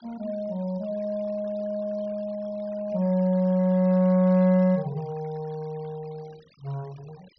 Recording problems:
low-pass filter; nothing above 5.9 kHz
denoising artefacts; signal-to-artefact ratio 28 dB

